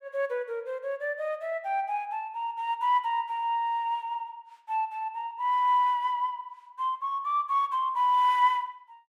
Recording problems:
none

